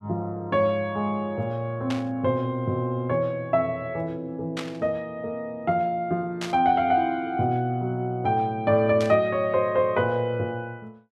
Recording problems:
static burst; 4 times, first at 2 s; peak -4 dB vs average level

